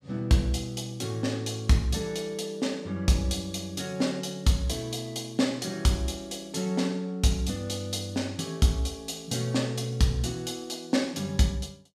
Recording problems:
none

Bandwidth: 14.5 kHz